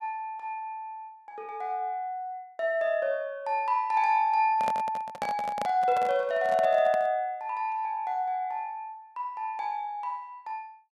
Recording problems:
microphone handling noise; from 4.5 to 7 s; peak -1 dB vs average level

